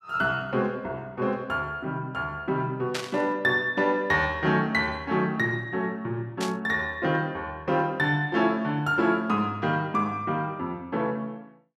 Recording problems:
burst of static; at 3 s and at 6.5 s; peak 0 dB vs average level

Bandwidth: 14 kHz